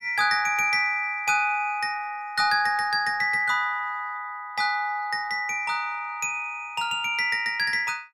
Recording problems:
none

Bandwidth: 16 kHz